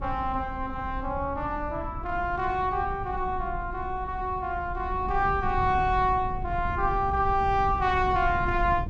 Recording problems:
wind noise; below 110 Hz, SNR 10 dB

